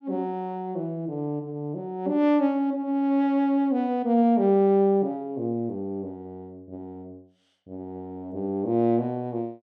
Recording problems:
none

